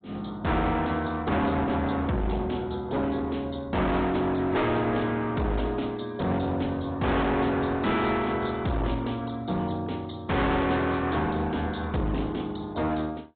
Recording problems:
low-pass filter; nothing above 3.9 kHz
lossy compression; AAC, log-spectral distance 4 dB
distorted audio; hard clipping, uneven, signal-to-distortion ratio 5 dB

